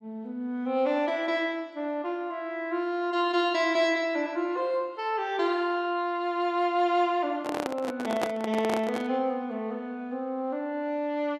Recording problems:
microphone handling noise; from 7.5 to 9 s; peak +3 dB vs average level

